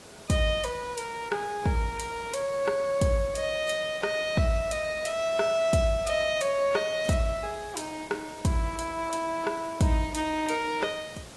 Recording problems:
lossy codec; AAC, log-spectral distance 4 dB, nothing above 11.3 kHz
hiss; slope -4 dB per octave, SNR 17 dB

